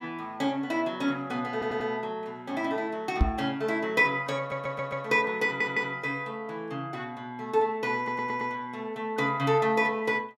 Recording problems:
audio stuttering; 4 times, first at 1.5 s
microphone bump; at 3 s; peak +9 dB vs average level

